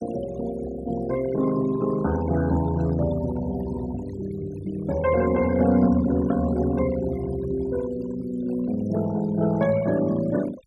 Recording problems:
noise reduction artefacts; signal-to-artefact ratio 16 dB

